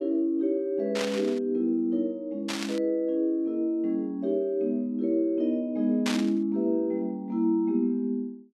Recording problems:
static burst; at 1 s, at 2.5 s and at 6 s; peak 0 dB vs average level

